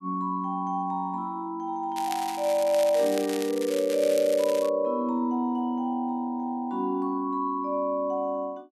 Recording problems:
crackling; from 2 to 4.5 s; loose cable, SNR 12 dB

